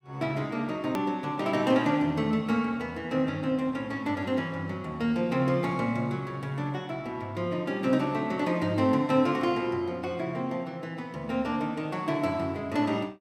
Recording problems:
hard cut with a click; at 1 s

